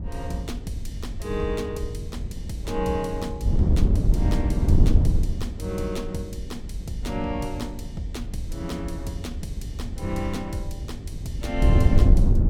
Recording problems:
wind on the microphone; below 100 Hz, SNR -5 dB

